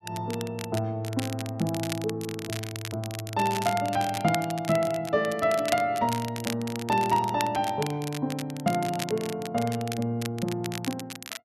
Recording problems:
crackling; vinyl, SNR 10 dB

